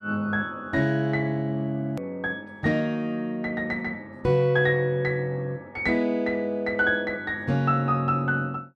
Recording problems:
edit click; at 2 s

